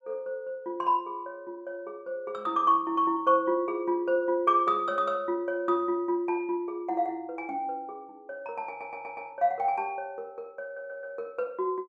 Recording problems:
stutter; at 8.5 s and at 11 s

